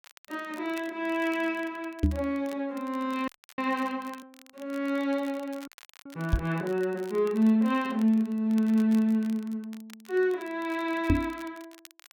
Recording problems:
crackling; vinyl, SNR 24 dB
microphone bump; at 2 s, at 6.5 s and at 11 s; peak +8 dB vs average level
frozen audio; at 3.5 s and at 5.5 s

